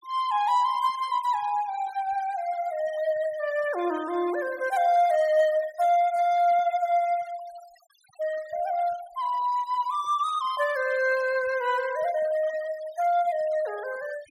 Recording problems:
denoising artefacts; signal-to-artefact ratio 21 dB

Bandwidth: 16 kHz